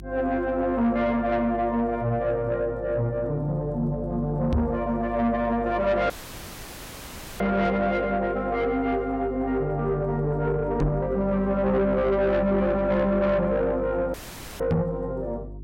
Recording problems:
distorted audio; soft clipping, signal-to-distortion ratio 11 dB
hum; 50 Hz, harmonics up to 400 Hz, SNR 14 dB
microphone bump; at 4.5 s, at 11 s and at 15 s; peak +5 dB vs average level
dropout; at 6 s for 1.5 s and at 14 s

